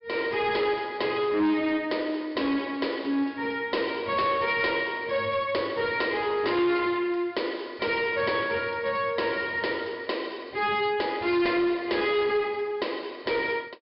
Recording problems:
low-pass filter; nothing above 5.2 kHz
distortion; soft clipping, signal-to-distortion ratio 12 dB

